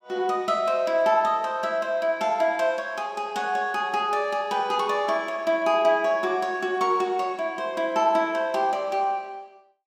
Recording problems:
none

